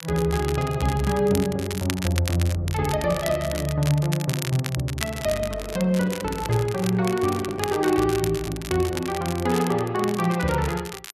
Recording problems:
crackling; vinyl, SNR 11 dB
handling noise; from 5 to 8 s; peak -10 dB vs average level

